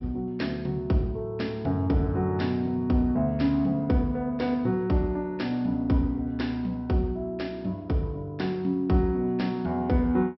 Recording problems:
treble cut off; nothing above 5.6 kHz

